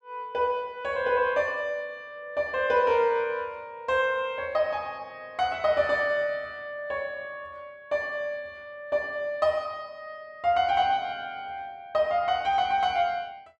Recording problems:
none

